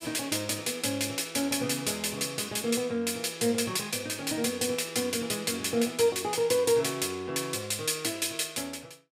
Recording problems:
none

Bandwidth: 15.5 kHz